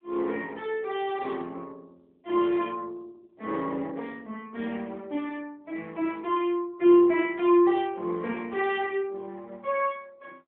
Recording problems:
phone line; 260 Hz to 3.5 kHz, AMR-NB

